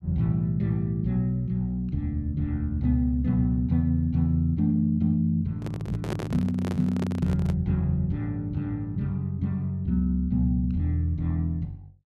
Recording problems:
handling noise; from 5.5 to 7.5 s; peak -2 dB vs average level

